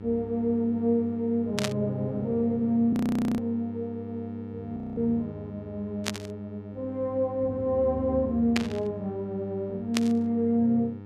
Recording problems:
hum; 50 Hz, harmonics up to 1.3 kHz, SNR 13 dB
burst of static; 4 times, first at 1.5 s; peak +4 dB vs average level
frozen audio; at 3 s and at 5 s

